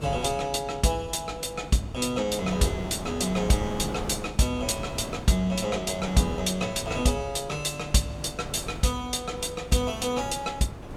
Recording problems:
hum; 50 Hz, harmonics up to 600 Hz, SNR 19 dB
wind noise; below 660 Hz, SNR 12 dB

